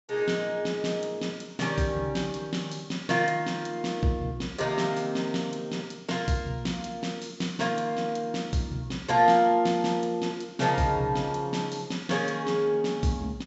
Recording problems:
low-pass filter; nothing above 7.6 kHz

